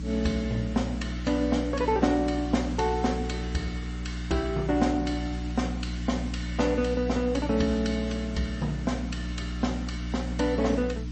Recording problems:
lossy codec; MP3, log-spectral distance 3 dB, nothing above 8 kHz
electrical hum; 60 Hz, harmonics up to 300 Hz, SNR 5 dB
hiss; slope 0 dB per octave, SNR 21 dB

